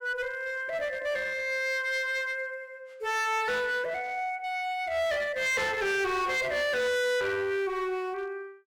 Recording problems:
distorted audio; hard clipping, uneven, signal-to-distortion ratio 7 dB

